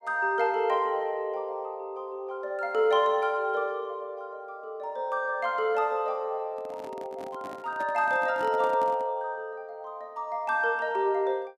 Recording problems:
handling noise; from 6.5 to 9 s; peak -10 dB vs average level

